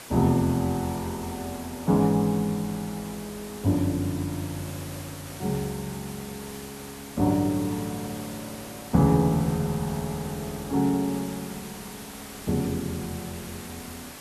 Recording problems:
hiss; slope -2 dB per octave, SNR 13 dB

